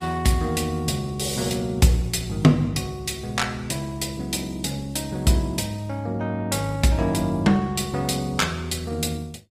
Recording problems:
lossy codec; Opus, log-spectral distance 4 dB, nothing above 15.1 kHz

